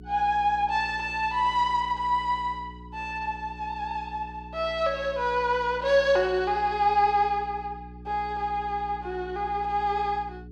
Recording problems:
electrical hum; 60 Hz, harmonics up to 420 Hz, SNR 18 dB

